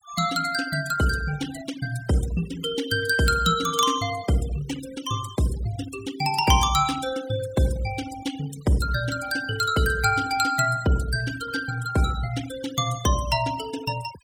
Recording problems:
noise reduction artefacts; signal-to-artefact ratio 15 dB

